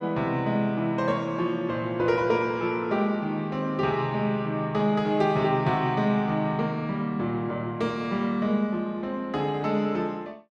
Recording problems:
none

